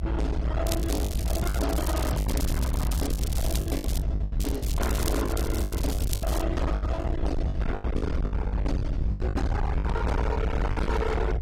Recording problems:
codec artefacts; AAC, log-spectral distance 3 dB, nothing above 14.3 kHz
distortion; hard clipping, uneven, signal-to-distortion ratio 5 dB
rumble; below 120 Hz, SNR -2 dB
lost packets; 13% of the sound replaced, filled with the last packet
crackle; from 0.5 to 4 s and from 4.5 to 6.5 s; loose cable, SNR 8 dB

